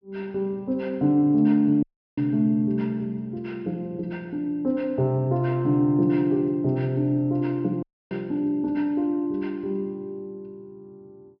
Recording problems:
treble missing; nothing above 5.5 kHz
audio cutting out; at 2 s and at 8 s

